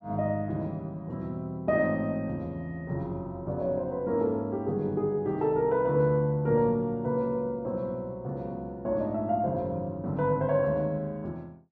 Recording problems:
none

